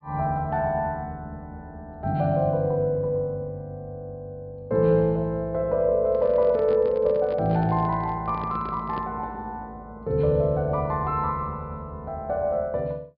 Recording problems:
treble cut off; nothing above 5.1 kHz
handling noise; from 6 to 9 s; peak -7 dB vs average level

